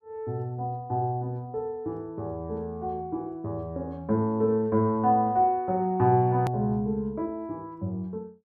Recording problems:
hard cut with a click; at 6.5 s

